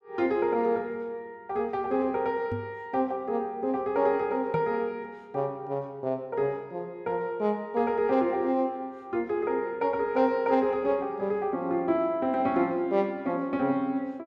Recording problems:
knock on the microphone; at 2.5 s and at 4.5 s; peak -2 dB vs average level

